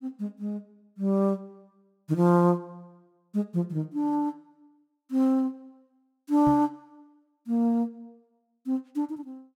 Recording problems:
microphone thump; at 6.5 s; peak -3 dB vs average level

